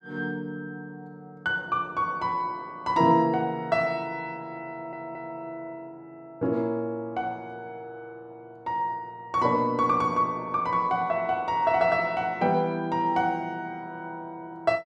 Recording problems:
stutter; at 4.5 s

